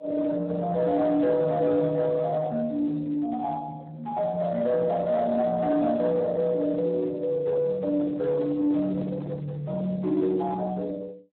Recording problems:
phone line; 170 Hz to 2 kHz, Speex
distortion; soft clipping, signal-to-distortion ratio 11 dB
handling noise; from 8 to 9.5 s; peak -7 dB vs average level

